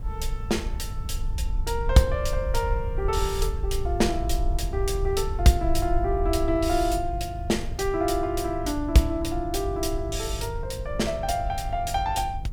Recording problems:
electrical hum; 50 Hz, harmonics up to 500 Hz, SNR 14 dB
background hiss; slope -7 dB per octave, SNR 28 dB
wind noise; below 64 Hz, SNR 6 dB

